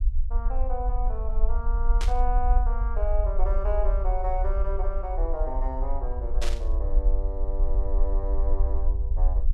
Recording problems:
low-frequency rumble; below 48 Hz, SNR -6 dB
burst of static; at 2 s and at 6.5 s; peak +3 dB vs average level

